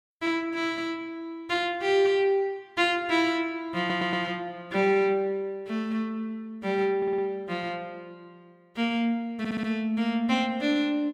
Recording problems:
audio stuttering; at 4 s, at 7 s and at 9.5 s

